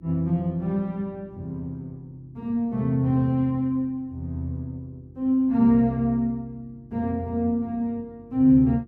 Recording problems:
electrical hum; 50 Hz, harmonics up to 350 Hz, SNR 28 dB

